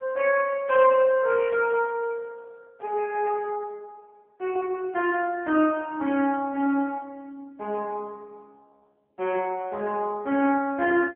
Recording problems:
telephone audio; 220 Hz to 3.1 kHz, AMR-NB

